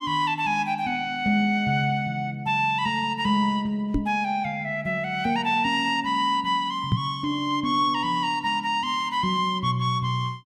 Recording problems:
knock on the microphone; at 4 s and at 7 s; peak +5 dB vs average level

